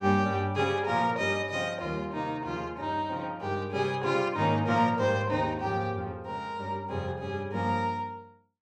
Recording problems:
none

